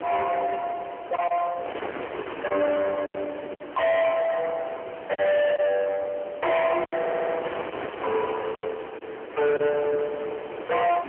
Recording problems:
telephone audio; 990 Hz to 2.2 kHz, AMR-NB
distorted audio; soft clipping, signal-to-distortion ratio 6 dB
wind on the microphone; below 1.4 kHz, SNR 10 dB
lost packets; 5% of the sound replaced, filled with silence
audio stuttering; at 7 s

